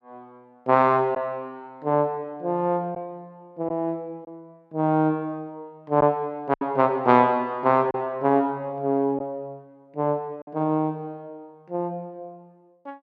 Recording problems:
packet loss; 2% of the sound replaced, filled with silence

